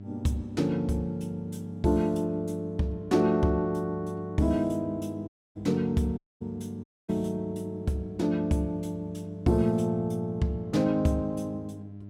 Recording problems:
hum; 50 Hz, harmonics up to 700 Hz, SNR 14 dB
dropout; at 5.5 s, at 6 s and at 7 s

